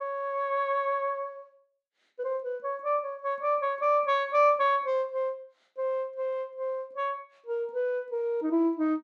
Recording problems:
none

